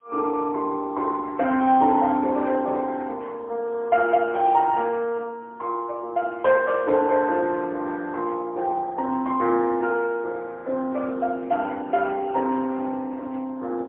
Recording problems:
telephone audio; 260 Hz to 3.2 kHz, AMR-NB, then MP3

